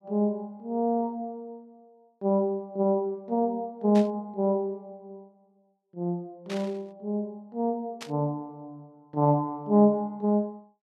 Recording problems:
burst of static; at 4 s, at 6.5 s and at 8 s; peak -7 dB vs average level

